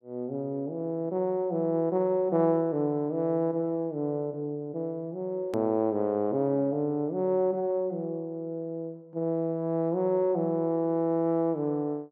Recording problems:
edit click; at 5.5 s

